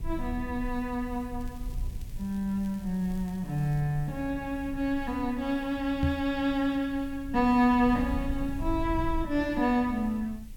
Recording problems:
hiss; SNR 28 dB
low-frequency rumble; below 74 Hz, SNR 12 dB
crackling; from 1.5 to 4 s; loose cable, SNR 29 dB
microphone thump; at 6 s; peak +5 dB vs average level

